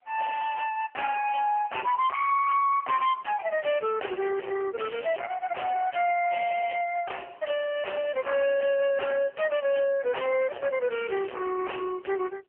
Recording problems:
phone line; 320 Hz to 2.8 kHz, AMR-NB
distortion; hard clipping, signal-to-distortion ratio 3 dB

